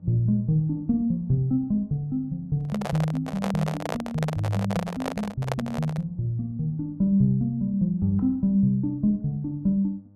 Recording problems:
electrical hum; 50 Hz, harmonics up to 600 Hz, SNR 27 dB
handling noise; from 2.5 to 6 s; peak +1 dB vs average level

